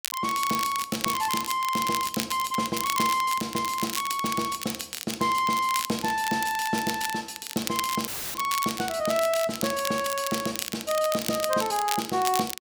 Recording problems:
crackle; vinyl, SNR 6 dB
dropout; at 8 s; filled with static

